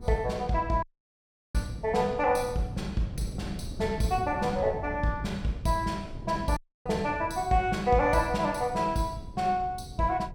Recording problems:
wind on the microphone; below 200 Hz, SNR 13 dB
audio cutting out; at 1 s for 0.5 s and at 6.5 s

